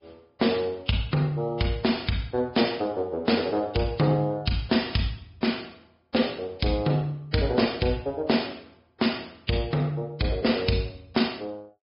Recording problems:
treble missing; nothing above 5.2 kHz
lossy codec; Vorbis, log-spectral distance 3 dB

